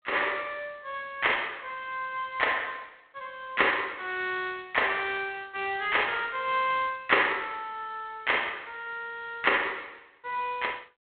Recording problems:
telephone audio; 260 Hz to 3.5 kHz, G.726

